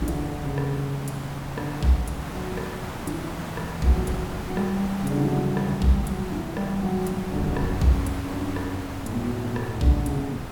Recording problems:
background hiss; slope -6 dB per octave, SNR 8 dB
wind on the microphone; below 250 Hz, SNR 11 dB

